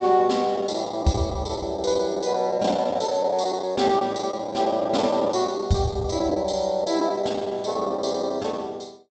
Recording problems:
treble cut off; nothing above 8 kHz
lost packets; 12% of the sound replaced, filled with the last packet

